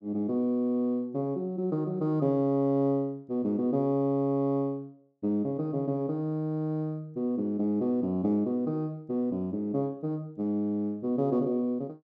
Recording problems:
none

